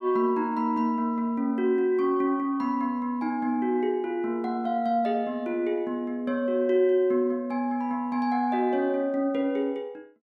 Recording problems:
none

